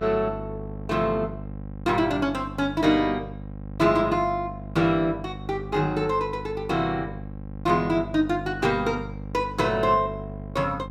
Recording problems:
hum; 50 Hz, harmonics up to 850 Hz, SNR 12 dB

